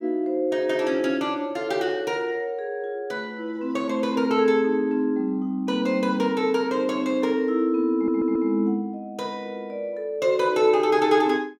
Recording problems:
stutter; at 8 s

